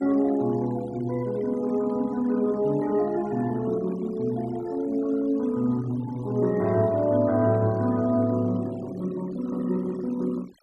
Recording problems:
noise reduction artefacts; signal-to-artefact ratio 22 dB

